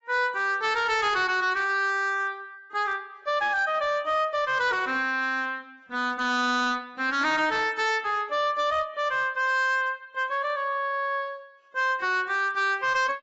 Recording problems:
lossy compression; AAC, log-spectral distance 2 dB, nothing above 7.6 kHz
distorted audio; hard clipping, uneven, signal-to-distortion ratio 12 dB

